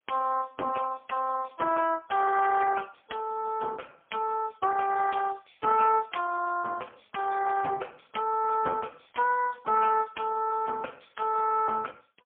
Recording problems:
telephone audio; 300 Hz to 2.1 kHz, AMR-NB, then MP3

